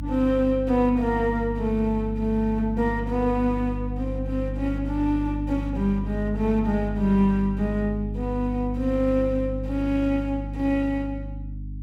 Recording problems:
hum; 50 Hz, harmonics up to 300 Hz, SNR 7 dB

